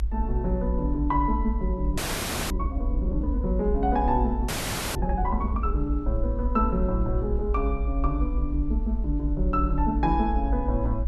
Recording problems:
rumble; below 58 Hz, strongest tone 52 Hz, SNR 1 dB
frozen audio; at 2 s for 0.5 s and at 4.5 s

